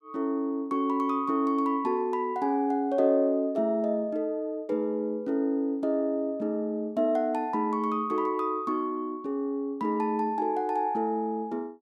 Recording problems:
none

